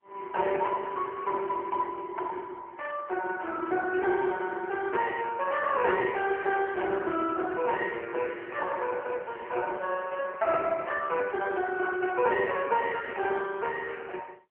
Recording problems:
telephone audio; 320 Hz to 2.8 kHz, AMR-NB

